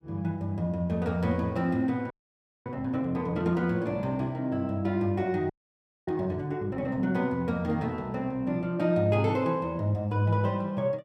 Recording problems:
frozen audio; at 2 s for 0.5 s and at 5.5 s for 0.5 s

